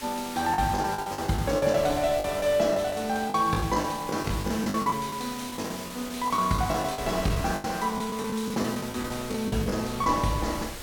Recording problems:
background hiss; SNR 12 dB
wind noise; below 840 Hz, SNR 17 dB
lost packets; 14% of the sound replaced, filled with the last packet

